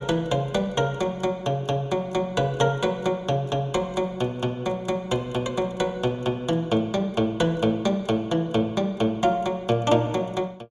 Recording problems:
none

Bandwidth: 14.5 kHz